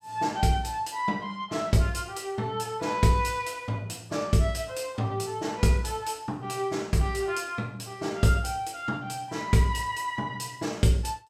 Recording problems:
none

